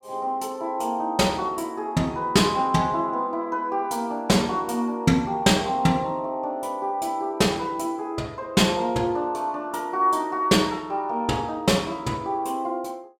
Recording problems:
none

